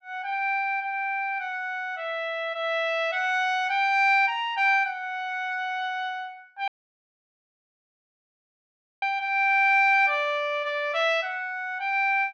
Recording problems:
audio cutting out; at 6.5 s for 2.5 s

